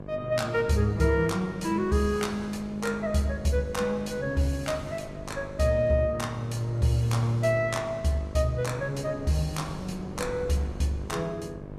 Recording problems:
lossy compression; Vorbis, log-spectral distance 2 dB, nothing above 13.5 kHz
electrical hum; 50 Hz, harmonics up to 1.2 kHz, SNR 14 dB
wind noise; below 310 Hz, SNR 20 dB

